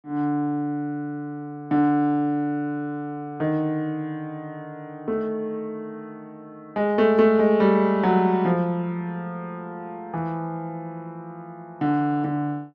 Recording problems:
none

